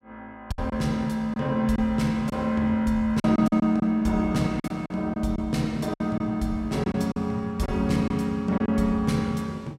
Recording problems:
packet loss; 7% of the sound replaced, filled with silence

